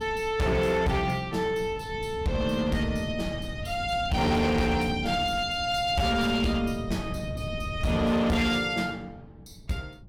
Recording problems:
distortion; hard clipping, signal-to-distortion ratio 11 dB
wind on the microphone; below 180 Hz, SNR 12 dB

